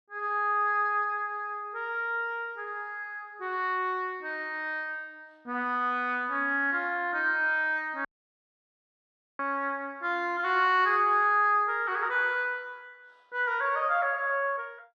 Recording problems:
audio cutting out; at 8 s for 1.5 s

